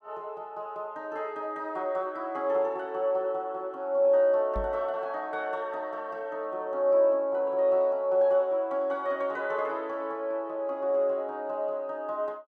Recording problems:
microphone thump; at 4.5 s; peak -4 dB vs average level

